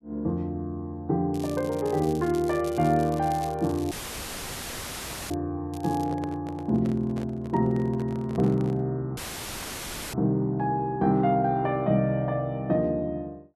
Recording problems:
crackling; from 1.5 to 5.5 s and at 5.5 s; loose cable, SNR 20 dB
dropout; at 4 s for 1.5 s and at 9 s for 1 s; filled with static
handling noise; from 6 to 9 s; peak -7 dB vs average level

